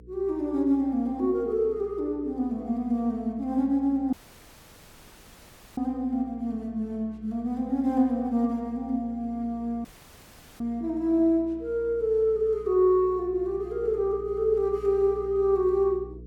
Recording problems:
mains hum; 60 Hz, harmonics up to 480 Hz, SNR 21 dB
audio cutting out; at 4 s for 1.5 s and at 10 s for 1 s

